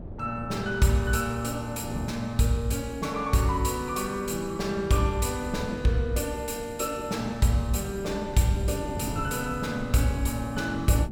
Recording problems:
wind on the microphone; below 270 Hz, SNR 12 dB

